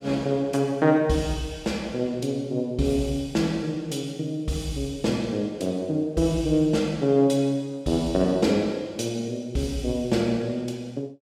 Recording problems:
none

